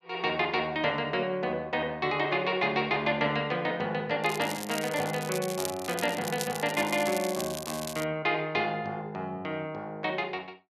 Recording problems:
crackling; from 4 to 8 s; loose cable, SNR 9 dB

